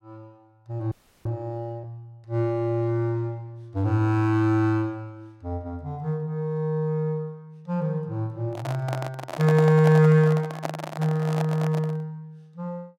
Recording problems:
frozen audio; at 1 s
handling noise; from 8.5 to 12 s; peak -1 dB vs average level

